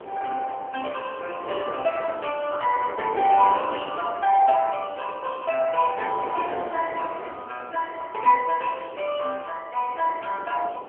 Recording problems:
phone line; 340 Hz to 2.9 kHz, AMR-NB
wind on the microphone; below 740 Hz, SNR 13 dB

